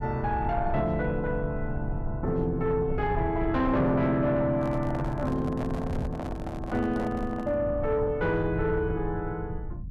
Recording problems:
distortion; soft clipping, signal-to-distortion ratio 12 dB
low-frequency rumble; below 120 Hz, SNR 8 dB
microphone handling noise; from 4.5 to 7.5 s; peak -4 dB vs average level

